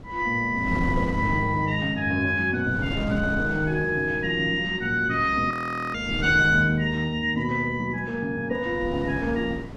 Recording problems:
wind noise; below 290 Hz, SNR 11 dB
frozen audio; at 5.5 s

